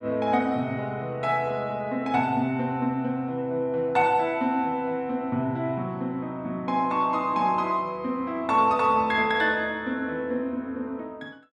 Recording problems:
none

